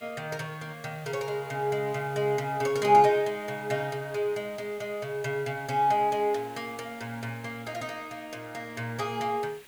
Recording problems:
hiss; SNR 22 dB

